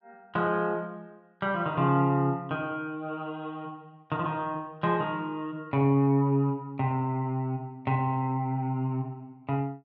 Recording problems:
none

